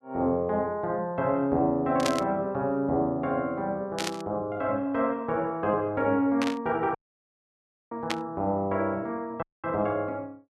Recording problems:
static burst; 4 times, first at 2 s; peak +2 dB vs average level
dropout; at 7 s for 1 s and at 9.5 s

